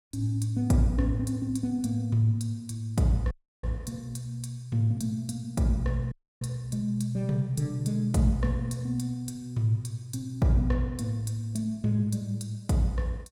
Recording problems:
audio cutting out; at 3.5 s and at 6 s

